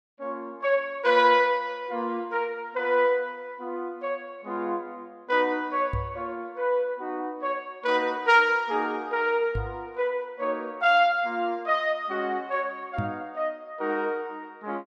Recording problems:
microphone thump; at 6 s, at 9.5 s and at 13 s; peak 0 dB vs average level

